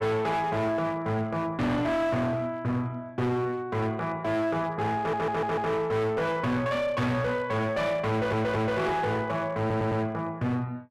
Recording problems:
distorted audio; hard clipping, uneven, signal-to-distortion ratio 8 dB
audio stuttering; at 5 s, at 8 s and at 9.5 s

